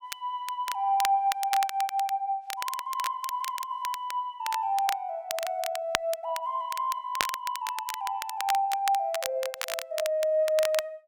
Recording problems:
crackling; vinyl, SNR 8 dB

